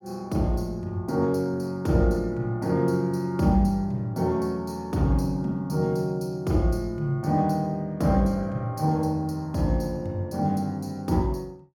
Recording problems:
none

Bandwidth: 17.5 kHz